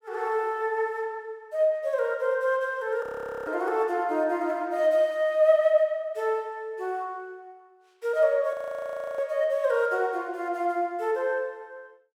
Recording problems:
frozen audio; at 3 s and at 8.5 s for 0.5 s

